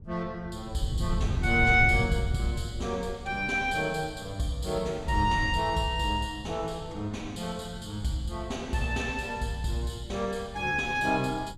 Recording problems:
wind noise; below 120 Hz, SNR 9 dB

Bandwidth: 14 kHz